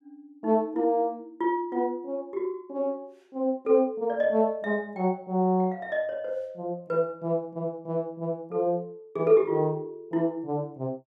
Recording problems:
none

